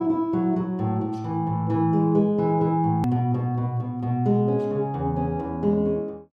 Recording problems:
click at an edit; at 3 s

